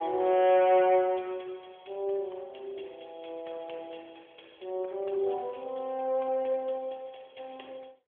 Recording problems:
telephone audio; 300 Hz to 3.4 kHz, AMR-NB

